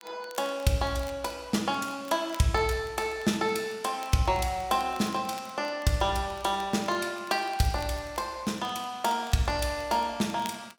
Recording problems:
crackle; vinyl, SNR 23 dB

